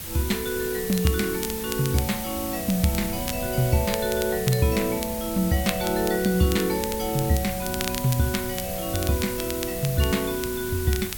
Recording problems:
hiss; slope 0 dB per octave, SNR 7 dB
wind noise; below 150 Hz, SNR 15 dB
crackling; vinyl, SNR 11 dB

